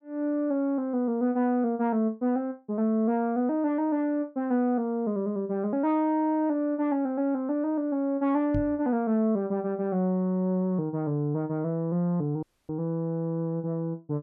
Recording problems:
microphone thump; at 8.5 s; peak -1 dB vs average level
audio cutting out; at 12 s

